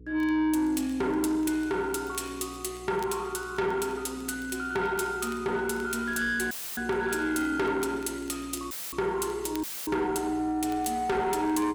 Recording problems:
distortion; soft clipping, signal-to-distortion ratio 10 dB
hum; 60 Hz, harmonics up to 480 Hz, SNR 21 dB
crackling; vinyl, SNR 27 dB
audio cutting out; at 6.5 s, at 8.5 s and at 9.5 s; filled with static

